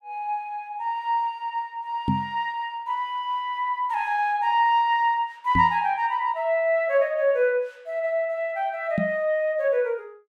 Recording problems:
knock on the microphone; at 2 s, at 5.5 s and at 9 s; peak +4 dB vs average level

